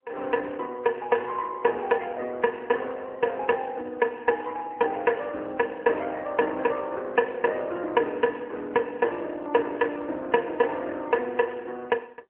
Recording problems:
phone line; 240 Hz to 3.1 kHz, AMR-NB

